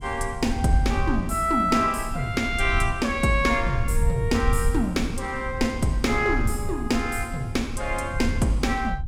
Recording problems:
low-frequency rumble; below 78 Hz, SNR 6 dB

